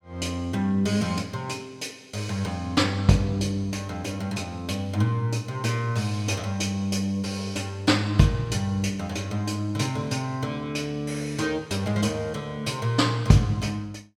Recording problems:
none

